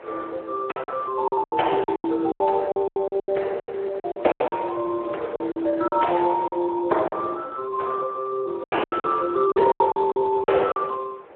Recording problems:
phone line; 320 Hz to 3.1 kHz, Speex
wind on the microphone; below 990 Hz, SNR 19 dB
lost packets; 14% of the sound replaced, filled with silence

